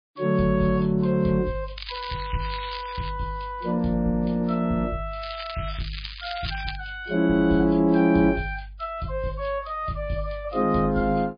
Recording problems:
lossy codec; MP3, log-spectral distance 6 dB, nothing above 4.2 kHz
crackling; from 2 to 3 s and from 5 to 7 s; loose cable, SNR 11 dB

